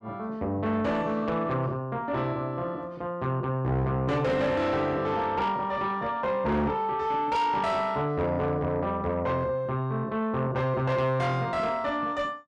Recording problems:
distortion; soft clipping, signal-to-distortion ratio 10 dB

